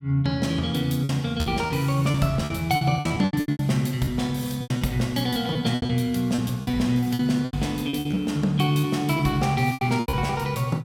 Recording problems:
lost packets; 14% of the sound replaced, filled with repeated pitch periods

